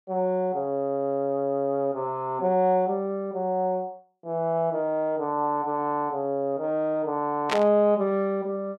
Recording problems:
static burst; at 7.5 s; peak +3 dB vs average level

